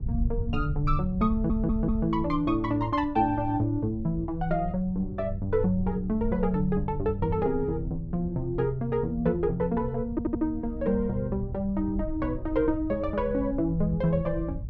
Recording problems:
rumble; below 88 Hz, SNR 9 dB
stutter; at 1.5 s and at 10 s

